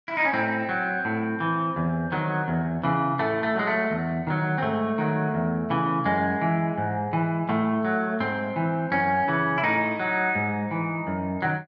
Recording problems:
none

